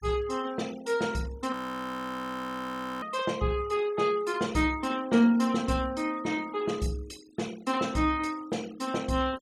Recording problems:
denoising artefacts; signal-to-artefact ratio 21 dB
frozen audio; at 1.5 s for 1.5 s

